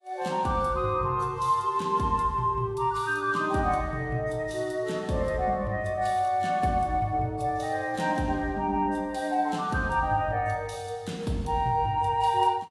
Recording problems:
lossy codec; AAC, log-spectral distance 2 dB, nothing above 11.3 kHz

